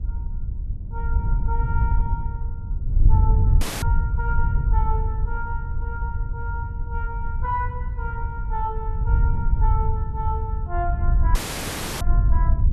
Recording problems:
wind on the microphone; below 80 Hz, SNR -8 dB
audio cutting out; at 3.5 s and at 11 s for 0.5 s

